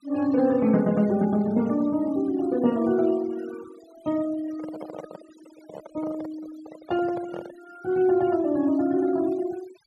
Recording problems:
noise reduction artefacts; signal-to-artefact ratio 21 dB
handling noise; from 4.5 to 7.5 s; peak -9 dB vs average level

